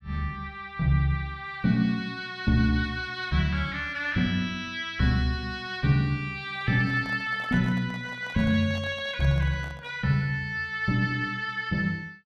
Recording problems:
microphone handling noise; from 6.5 to 10 s; peak -11 dB vs average level

